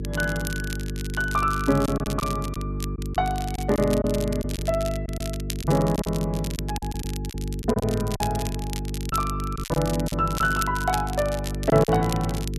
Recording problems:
mains hum; 50 Hz, harmonics up to 450 Hz, SNR 5 dB
crackling; vinyl, SNR 12 dB
lost packets; 7% of the sound replaced, filled with silence

